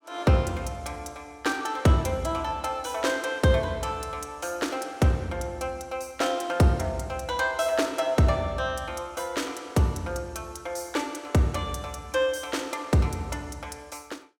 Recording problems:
none

